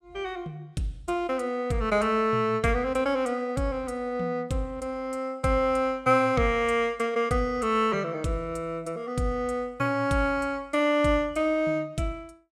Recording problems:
none

